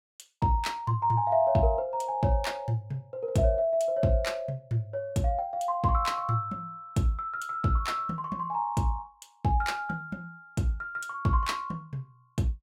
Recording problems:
none

